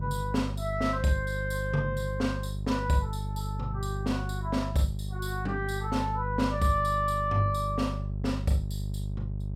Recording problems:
hum; 50 Hz, harmonics up to 400 Hz, SNR 4 dB

